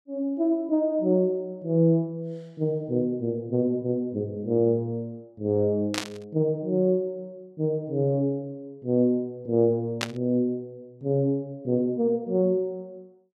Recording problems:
static burst; at 6 s and at 10 s; peak +2 dB vs average level

